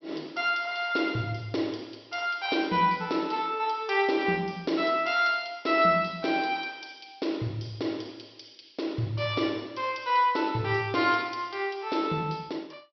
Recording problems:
treble missing; nothing above 5.7 kHz

